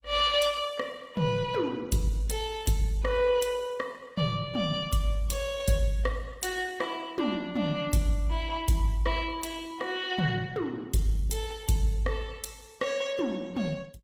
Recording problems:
lossy compression; Opus, log-spectral distance 3 dB

